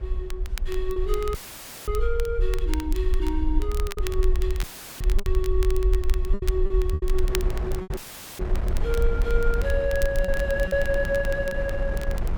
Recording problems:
rumble; below 52 Hz, SNR 0 dB
wind on the microphone; below 490 Hz, SNR 9 dB
crackle; vinyl, SNR 13 dB
packet loss; 6% of the sound replaced, filled with repeated pitch periods
dropout; at 1.5 s for 0.5 s, at 4.5 s and at 8 s; filled with static

